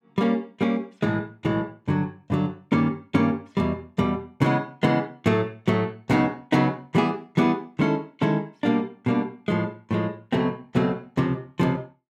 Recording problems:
none

